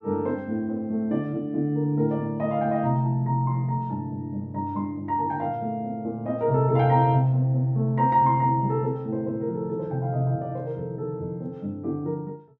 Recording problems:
none

